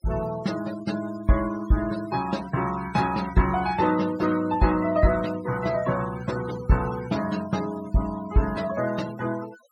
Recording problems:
noise reduction artefacts; signal-to-artefact ratio 16 dB

